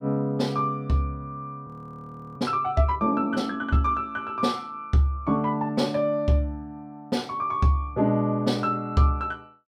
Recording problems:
audio freezing; at 1.5 s for 0.5 s

